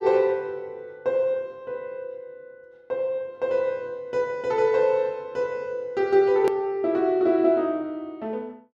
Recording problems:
hard cut with a click; at 6.5 s

